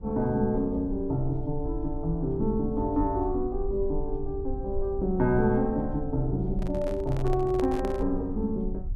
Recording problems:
rumble; below 56 Hz, strongest tone 20 Hz, SNR 9 dB
microphone handling noise; from 6.5 to 8 s; peak -4 dB vs average level

